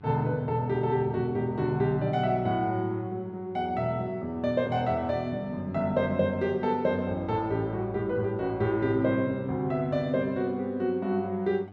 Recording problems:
hum; 50 Hz, harmonics up to 1.3 kHz, SNR 22 dB

